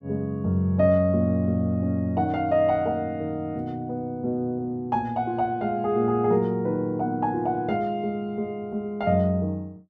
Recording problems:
none

